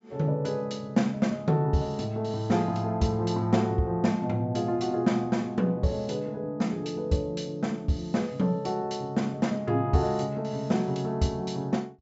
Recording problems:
treble cut off; nothing above 8 kHz

